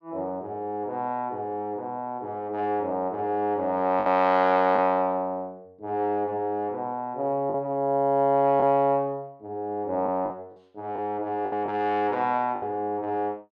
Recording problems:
lost packets; 3% of the sound replaced, filled with the last packet

